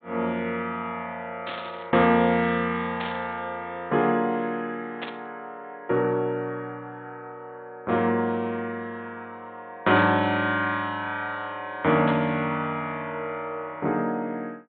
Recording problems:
treble cut off; nothing above 4 kHz
static burst; 5 times, first at 1.5 s; peak -4 dB vs average level

